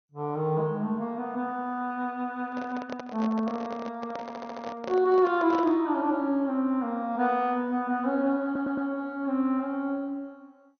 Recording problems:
codec artefacts; MP2, log-spectral distance 2 dB
handling noise; from 2.5 to 6 s; peak -4 dB vs average level
stutter; at 4 s and at 8.5 s

